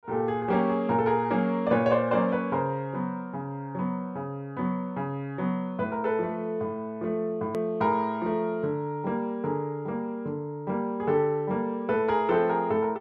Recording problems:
click at an edit; at 7.5 s

